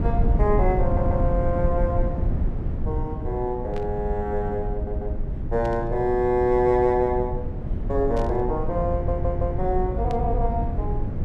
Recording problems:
low-frequency rumble; below 110 Hz, SNR 2 dB
audio stuttering; at 1 s, at 4.5 s and at 9 s
burst of static; 4 times, first at 3.5 s; peak -13 dB vs average level

